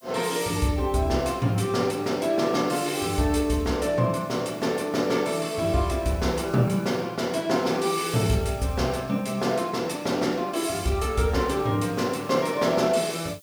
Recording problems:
background hiss; slope +4 dB per octave, SNR 26 dB

